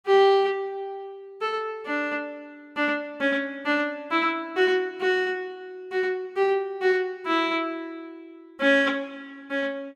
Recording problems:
none

